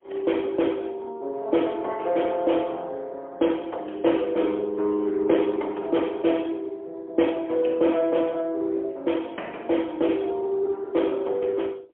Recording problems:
telephone audio; 260 Hz to 3.3 kHz, AMR-NB, then MP3

